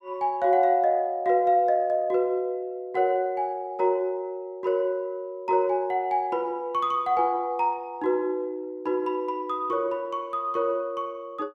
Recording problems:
none

